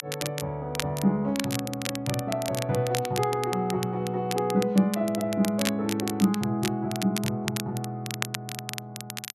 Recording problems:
crackle; vinyl, SNR 8 dB

